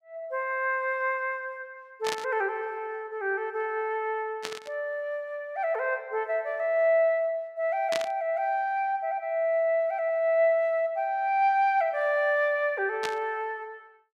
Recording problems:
burst of static; 4 times, first at 2 s; peak -1 dB vs average level

